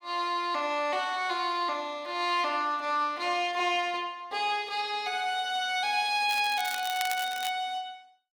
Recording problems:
crackling; from 6.5 to 7.5 s; loose cable, SNR 10 dB

